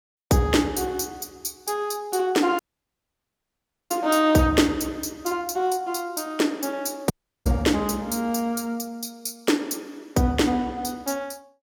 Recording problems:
audio cutting out; at 2.5 s for 1.5 s and at 7 s

